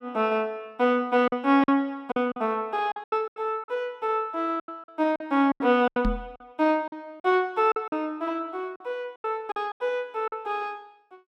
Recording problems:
lost packets; 11% of the sound replaced, filled with silence
knock on the microphone; at 6 s; peak +3 dB vs average level

